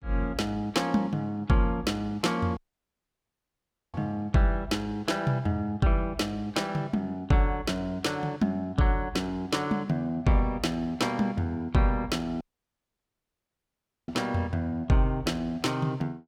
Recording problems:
audio cutting out; at 2.5 s for 1.5 s and at 12 s for 1.5 s

